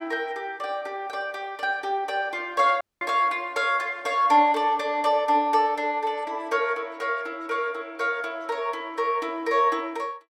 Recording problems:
dropout; at 3 s

